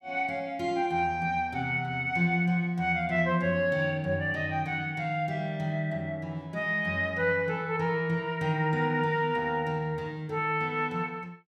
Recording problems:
none

